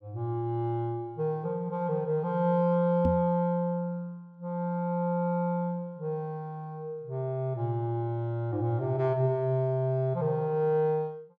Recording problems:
knock on the microphone; at 3 s; peak +2 dB vs average level

